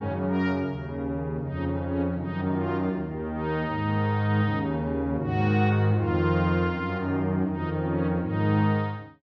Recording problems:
none

